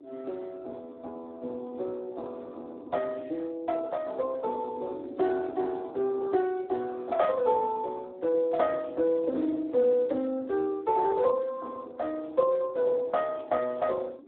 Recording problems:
telephone audio; 240 Hz to 2.5 kHz, Speex
wind noise; below 390 Hz, SNR 20 dB

